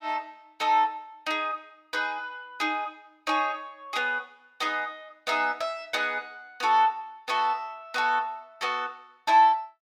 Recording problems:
none

